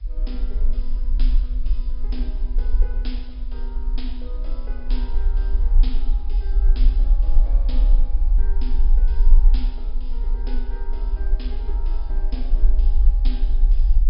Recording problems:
low-pass filter; nothing above 5.5 kHz
hiss; slope 0 dB per octave, SNR 24 dB
rumble; below 40 Hz, strongest tone 24 Hz, SNR -17 dB

